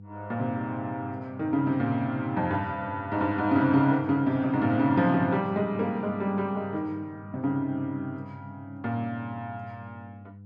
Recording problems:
hum; 50 Hz, harmonics up to 500 Hz, SNR 18 dB

